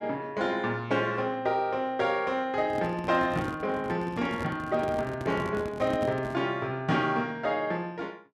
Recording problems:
handling noise; from 2.5 to 6.5 s; peak -2 dB vs average level

